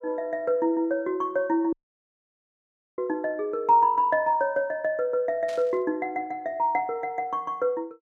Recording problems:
audio cutting out; at 1.5 s for 1.5 s
burst of static; at 5.5 s; peak -14 dB vs average level

